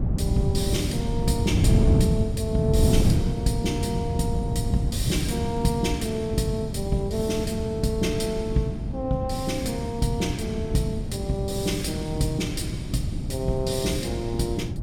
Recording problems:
wind on the microphone; below 180 Hz, SNR 0 dB

